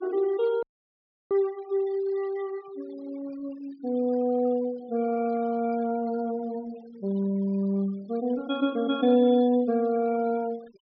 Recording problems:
low-pass filter; nothing above 5.5 kHz
denoising artefacts; signal-to-artefact ratio 24 dB
audio cutting out; at 0.5 s for 0.5 s

